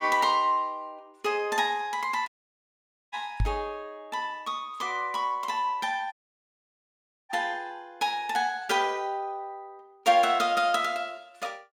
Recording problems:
dropout; at 2.5 s for 1 s and at 6 s for 1 s
microphone bump; at 3.5 s; peak +4 dB vs average level

